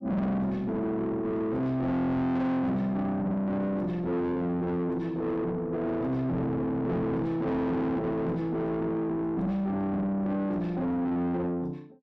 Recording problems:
distorted audio; soft clipping, signal-to-distortion ratio 7 dB

